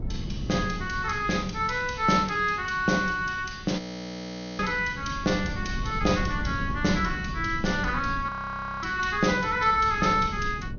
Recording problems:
treble cut off; nothing above 6.5 kHz
wind noise; below 180 Hz, SNR 10 dB
frozen audio; at 4 s for 1 s and at 8.5 s for 0.5 s

